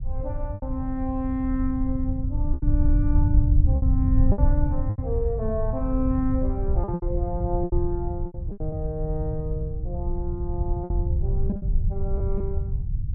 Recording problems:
low-frequency rumble; below 90 Hz, SNR -4 dB
lost packets; 8% of the sound replaced, filled with repeated pitch periods

